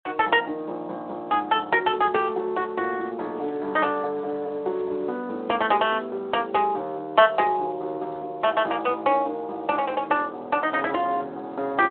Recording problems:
telephone audio; 260 Hz to 3.3 kHz, Speex

